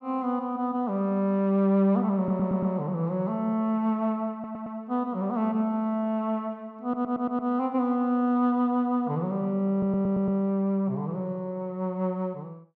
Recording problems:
stutter; 4 times, first at 2 s

